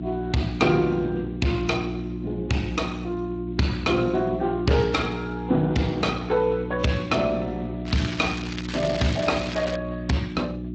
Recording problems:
lossy codec; AAC, then Speex, log-spectral distance 4 dB
distorted audio; soft clipping, signal-to-distortion ratio 11 dB
hum; 60 Hz, harmonics up to 360 Hz, SNR 7 dB
crackling; from 8 to 10 s; loose cable, SNR 10 dB

